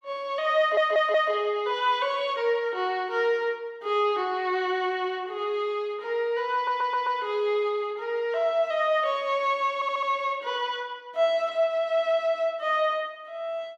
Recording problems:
stutter; at 0.5 s, at 6.5 s and at 10 s

